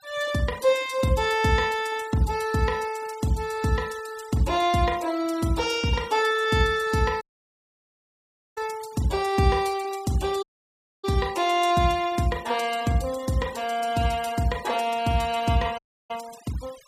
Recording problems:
noise reduction artefacts; signal-to-artefact ratio 19 dB
dropout; at 7 s for 1.5 s, at 10 s for 0.5 s and at 16 s

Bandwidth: 15.5 kHz